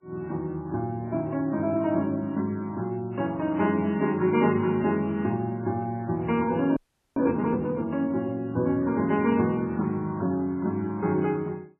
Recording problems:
lossy compression; MP3, then MP3, log-spectral distance 2 dB, nothing above 2.8 kHz
frozen audio; at 7 s

